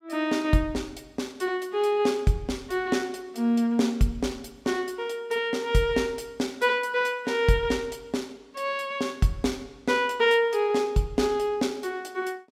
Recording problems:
none

